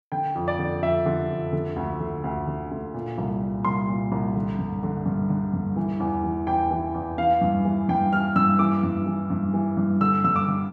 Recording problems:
none

